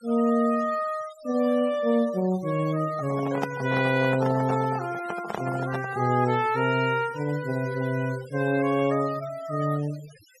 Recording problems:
noise reduction artefacts; signal-to-artefact ratio 18 dB
microphone handling noise; from 3 to 6 s; peak +1 dB vs average level

